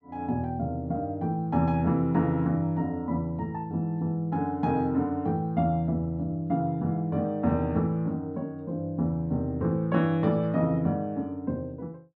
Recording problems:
none

